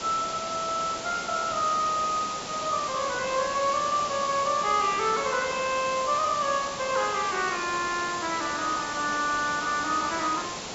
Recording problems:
treble missing; nothing above 8 kHz
hiss; SNR 7 dB

